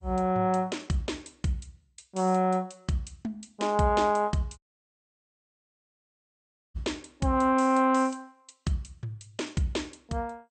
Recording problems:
lossy codec; MP2, log-spectral distance 6 dB, nothing above 8.5 kHz
dropout; at 4.5 s for 2 s

